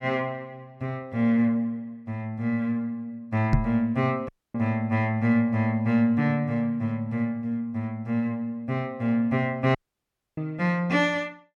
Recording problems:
microphone thump; at 3.5 s; peak +8 dB vs average level
audio cutting out; at 4.5 s and at 10 s for 0.5 s

